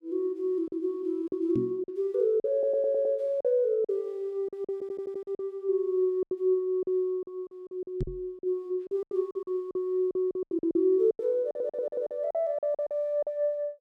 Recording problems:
lost packets; 13% of the sound replaced, filled with silence
knock on the microphone; at 1.5 s and at 8 s; peak +1 dB vs average level
stutter; at 2.5 s, at 4.5 s and at 11 s

